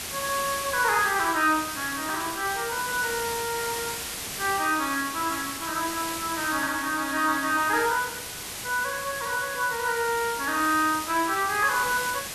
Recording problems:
hiss; slope 0 dB per octave, SNR 6 dB

